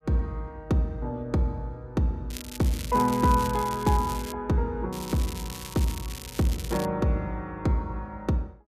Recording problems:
crackle; from 2.5 to 4 s, at 4 s and from 5 to 7 s; loose cable, SNR 12 dB

